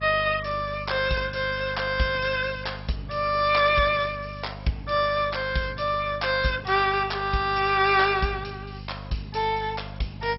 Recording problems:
codec artefacts; MP2, log-spectral distance 6 dB, nothing above 5.5 kHz
hum; 50 Hz, harmonics up to 450 Hz, SNR 15 dB

